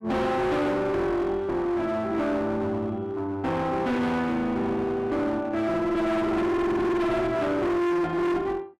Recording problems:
distortion; hard clipping, uneven, signal-to-distortion ratio 6 dB

